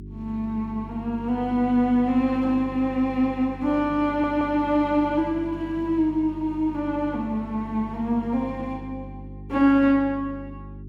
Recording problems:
hum; 50 Hz, harmonics up to 400 Hz, SNR 16 dB
audio stuttering; at 4 s

